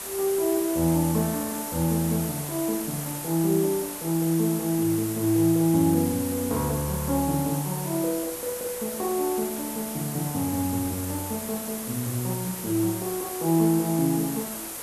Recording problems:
hiss; slope -3 dB per octave, SNR 7 dB

